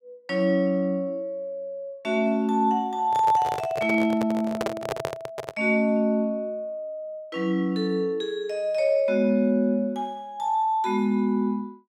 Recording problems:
handling noise; from 3 to 5.5 s; peak +1 dB vs average level

